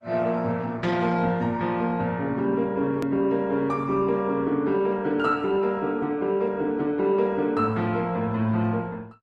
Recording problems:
lossy compression; Opus, log-spectral distance 2 dB, nothing above 13.1 kHz
hard cut with a click; at 3 s

